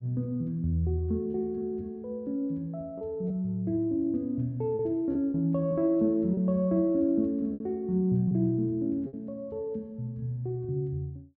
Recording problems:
low-pass filter; nothing above 8 kHz
packet loss; 4% of the sound replaced, filled with repeated pitch periods

